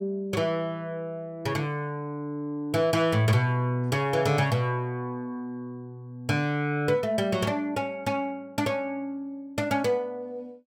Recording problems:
none

